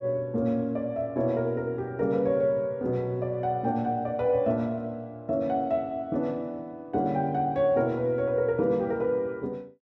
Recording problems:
none

